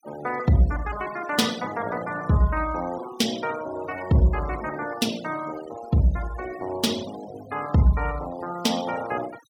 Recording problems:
denoising artefacts; signal-to-artefact ratio 16 dB

